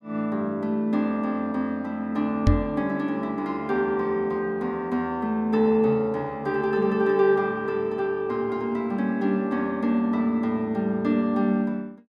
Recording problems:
microphone thump; at 2.5 s; peak +7 dB vs average level

